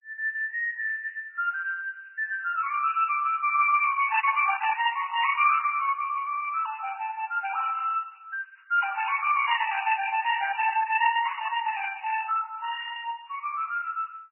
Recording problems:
lossy compression; Opus, then MP3, log-spectral distance 4 dB, nothing above 2.4 kHz

